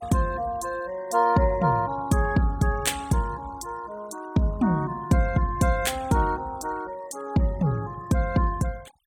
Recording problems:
noise reduction artefacts; signal-to-artefact ratio 23 dB

